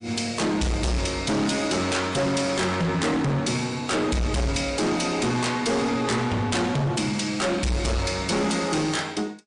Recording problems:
codec artefacts; MP3, log-spectral distance 4 dB, nothing above 9 kHz
distortion; hard clipping, signal-to-distortion ratio 7 dB

